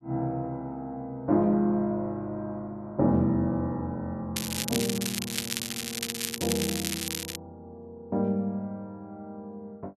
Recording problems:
crackling; from 4.5 to 7.5 s; loose cable, SNR 2 dB

